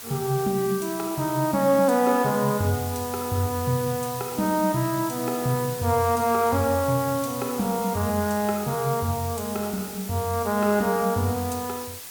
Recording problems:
hiss; slope +1 dB per octave, SNR 11 dB

